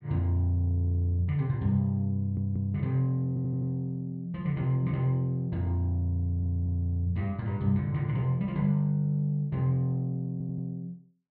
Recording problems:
audio stuttering; 4 times, first at 2 s

